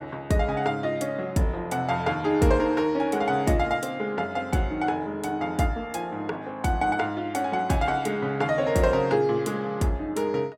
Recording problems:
none

